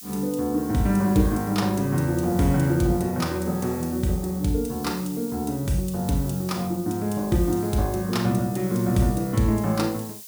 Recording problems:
hiss; slope +5 dB per octave, SNR 16 dB

